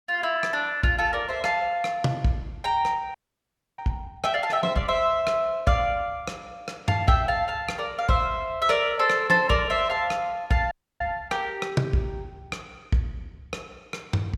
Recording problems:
audio freezing; at 3 s for 0.5 s and at 11 s

